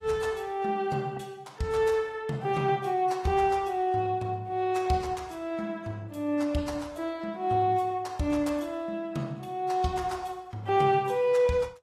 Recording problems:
lossy compression; AAC, log-spectral distance 2 dB

